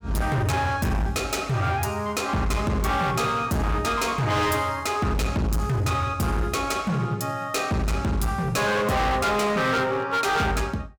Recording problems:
distorted audio; hard clipping, signal-to-distortion ratio 7 dB

